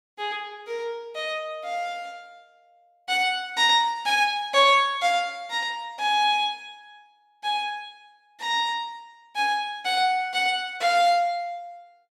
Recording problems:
none

